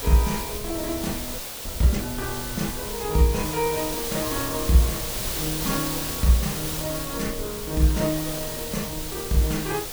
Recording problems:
hiss; SNR 4 dB
rumble; below 84 Hz, SNR 14 dB
audio freezing; at 1.5 s

